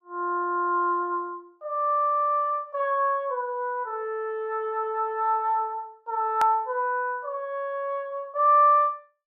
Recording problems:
click at an edit; at 6.5 s

